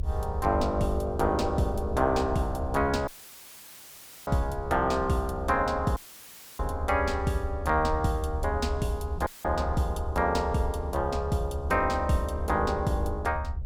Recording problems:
low-frequency rumble; below 78 Hz, SNR 7 dB
audio cutting out; at 3 s for 1 s, at 6 s for 0.5 s and at 9.5 s; filled with static

